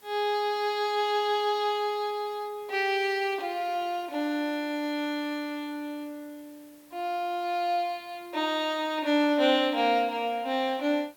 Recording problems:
background hiss; slope -2 dB per octave, SNR 27 dB

